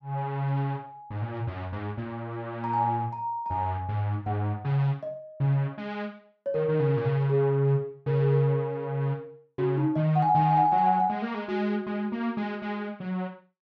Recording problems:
none

